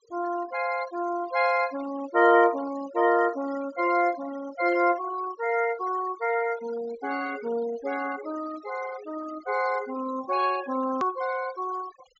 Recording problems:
treble missing; nothing above 7.4 kHz
noise reduction artefacts; signal-to-artefact ratio 17 dB
edit click; at 11 s

